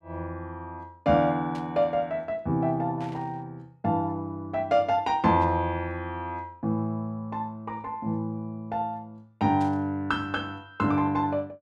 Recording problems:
static burst; 4 times, first at 1.5 s; peak -14 dB vs average level

